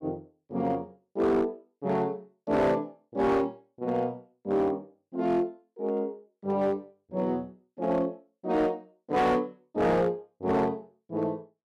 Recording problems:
distorted audio; hard clipping, signal-to-distortion ratio 11 dB

